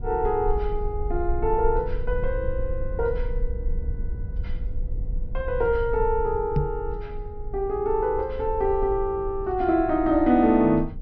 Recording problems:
treble cut off; nothing above 6 kHz
rumble; below 56 Hz, strongest tone 20 Hz, SNR 9 dB
microphone bump; at 6.5 s; peak +3 dB vs average level

